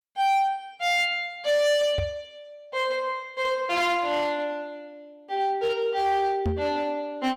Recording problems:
distorted audio; hard clipping, signal-to-distortion ratio 11 dB
microphone thump; at 2 s and at 6.5 s; peak +1 dB vs average level

